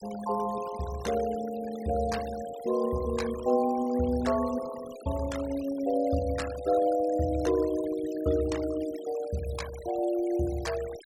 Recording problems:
noise reduction artefacts; signal-to-artefact ratio 16 dB

